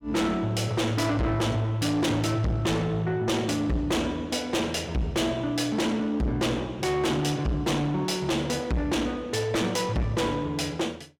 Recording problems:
distorted audio; soft clipping, signal-to-distortion ratio 6 dB

